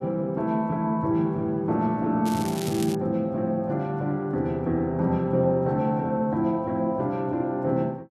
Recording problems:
crackling; at 2.5 s; loose cable, SNR 13 dB

